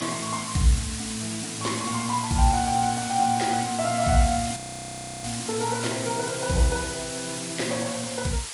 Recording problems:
lossy codec; MP3, log-spectral distance 15 dB
hiss; slope +3 dB per octave, SNR 6 dB
frozen audio; at 4.5 s for 0.5 s

